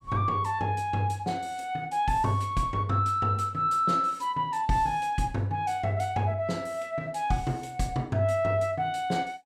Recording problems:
none

